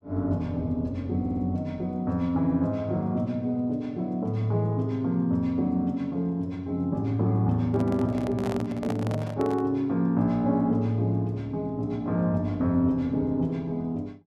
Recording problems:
stutter; at 1 s
microphone handling noise; from 7.5 to 9.5 s; peak -4 dB vs average level

